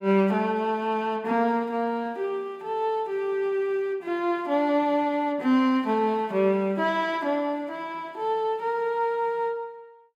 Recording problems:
none

